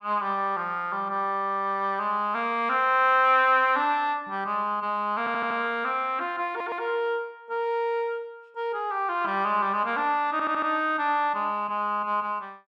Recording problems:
audio stuttering; at 5 s, at 6.5 s and at 10 s

